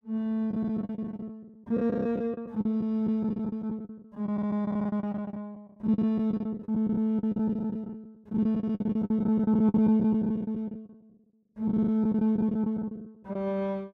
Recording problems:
lost packets; 19% of the sound replaced, filled with the last packet

